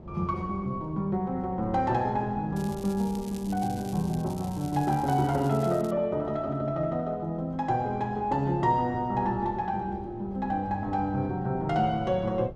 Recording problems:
wind noise; below 320 Hz, SNR 17 dB
crackling; from 2.5 to 6 s; loose cable, SNR 20 dB

